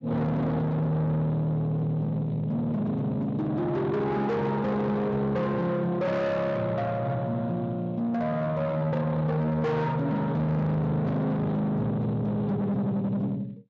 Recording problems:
lossy compression; Speex, log-spectral distance 2 dB
distortion; soft clipping, signal-to-distortion ratio 6 dB

